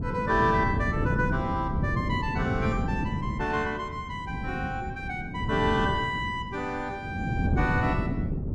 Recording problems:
wind on the microphone; below 230 Hz, SNR 2 dB

